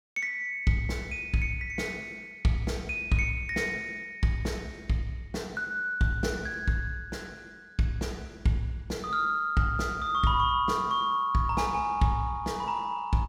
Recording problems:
none

